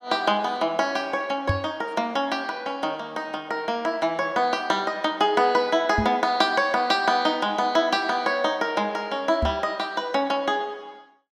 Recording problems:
microphone thump; at 1.5 s, at 6 s and at 9.5 s; peak +3 dB vs average level

